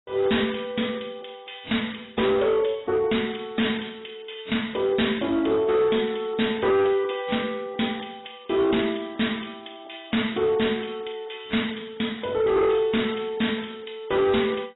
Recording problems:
codec artefacts; AAC, log-spectral distance 9 dB, nothing above 3.8 kHz
distorted audio; hard clipping, signal-to-distortion ratio 11 dB

